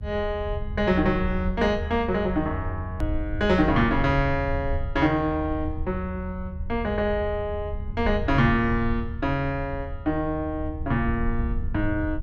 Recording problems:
low-frequency rumble; below 80 Hz, SNR 7 dB
edit click; at 3 s

